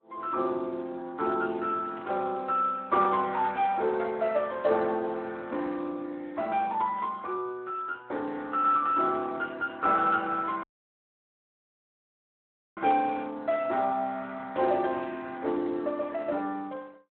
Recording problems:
phone line; 240 Hz to 4 kHz, Speex
static burst; at 2 s and at 7 s; peak -17 dB vs average level
audio cutting out; at 11 s for 2 s

